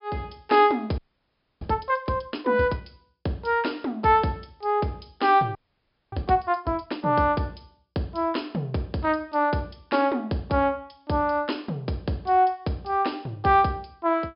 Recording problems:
treble missing; nothing above 5.5 kHz
frozen audio; at 1 s for 0.5 s and at 5.5 s for 0.5 s

